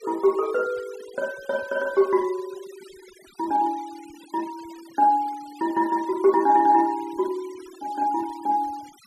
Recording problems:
noise reduction artefacts; signal-to-artefact ratio 24 dB

